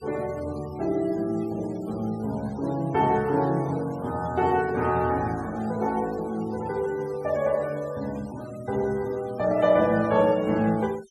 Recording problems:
denoising artefacts; signal-to-artefact ratio 22 dB

